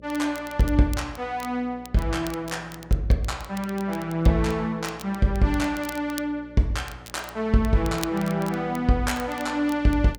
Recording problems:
hum; 60 Hz, harmonics up to 600 Hz, SNR 22 dB
crackle; vinyl, SNR 19 dB

